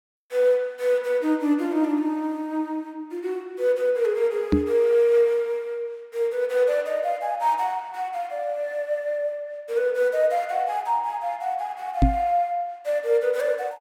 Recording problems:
microphone bump; at 4.5 s and at 12 s; peak +8 dB vs average level

